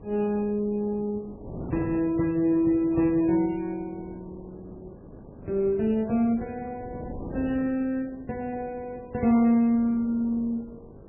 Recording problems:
codec artefacts; Vorbis, then MP3, log-spectral distance 2 dB, nothing above 2.7 kHz
electrical hum; 50 Hz, harmonics up to 1.6 kHz, SNR 27 dB
wind noise; below 410 Hz, SNR 18 dB

